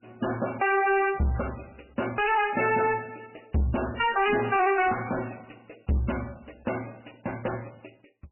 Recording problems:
lossy codec; MP3, log-spectral distance 10 dB, nothing above 2.9 kHz
distorted audio; soft clipping, signal-to-distortion ratio 7 dB

